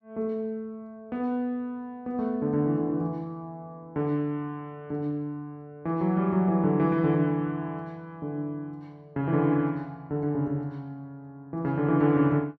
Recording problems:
none

